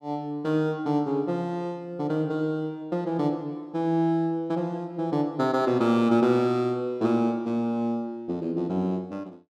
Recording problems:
none

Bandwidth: 13.5 kHz